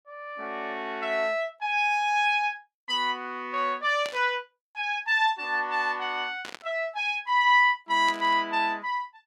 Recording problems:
static burst; at 4 s, at 6.5 s and at 8 s; peak -7 dB vs average level

